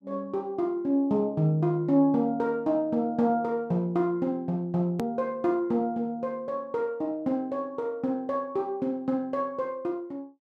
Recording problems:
edit click; at 5 s

